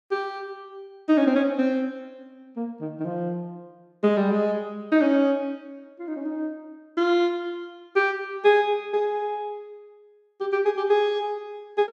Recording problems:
none

